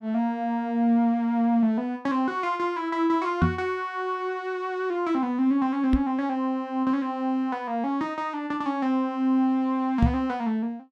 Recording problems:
knock on the microphone; at 3.5 s, at 6 s and at 10 s; peak +7 dB vs average level

